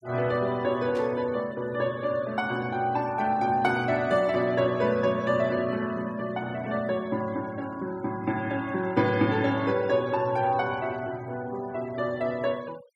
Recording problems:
denoising artefacts; signal-to-artefact ratio 22 dB
static burst; at 1 s; peak -14 dB vs average level

